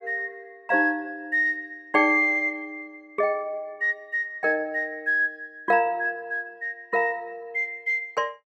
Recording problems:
none

